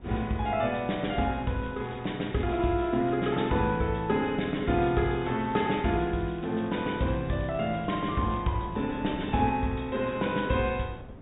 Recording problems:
treble missing; nothing above 4 kHz
wind noise; below 330 Hz, SNR 19 dB
crackling; from 1.5 to 3 s, at 5 s and from 6 to 8.5 s; loose cable, SNR 27 dB

